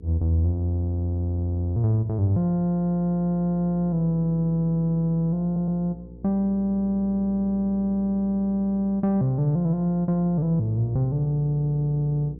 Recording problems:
hum; 60 Hz, harmonics up to 480 Hz, SNR 18 dB
audio stuttering; at 5.5 s

